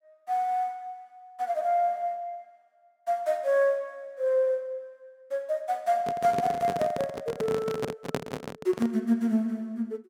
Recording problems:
handling noise; from 6 to 9 s; peak +3 dB vs average level

